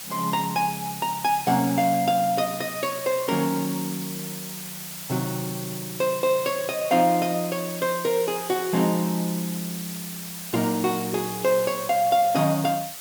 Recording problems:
background hiss; slope +1 dB per octave, SNR 9 dB

